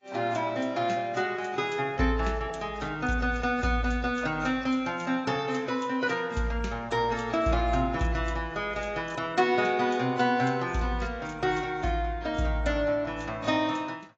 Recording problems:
codec artefacts; AAC, log-spectral distance 3 dB, nothing above 7.3 kHz

